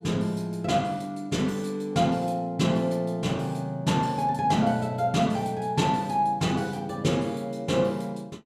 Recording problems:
none

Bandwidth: 15 kHz